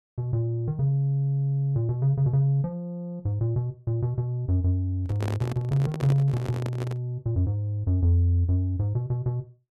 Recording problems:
microphone handling noise; from 5 to 7 s; peak -4 dB vs average level

